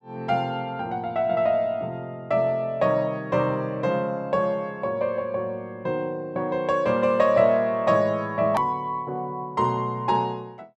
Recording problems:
edit click; at 8.5 s

